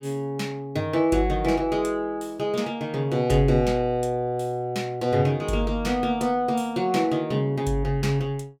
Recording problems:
none

